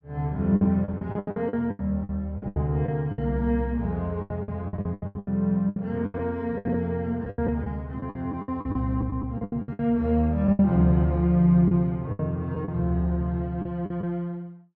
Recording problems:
packet loss; 16% of the sound replaced, filled with the last packet

